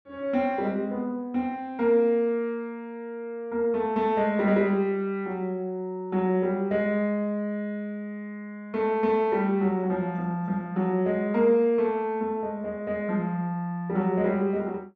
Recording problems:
none

